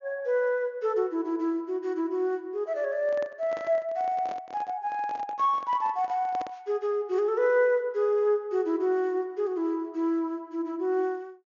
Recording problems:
low-pass filter; nothing above 6.9 kHz
handling noise; from 3 to 6.5 s; peak -8 dB vs average level

